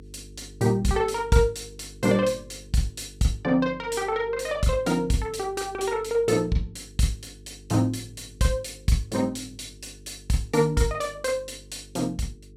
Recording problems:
hum; 50 Hz, harmonics up to 450 Hz, SNR 22 dB

